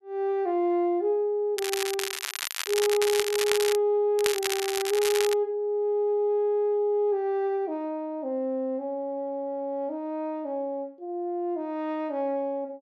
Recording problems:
crackle; from 1.5 to 4 s and from 4 to 5.5 s; loose cable, SNR 4 dB

